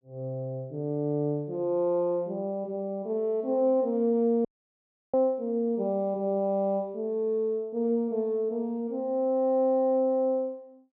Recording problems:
dropout; at 4.5 s for 0.5 s

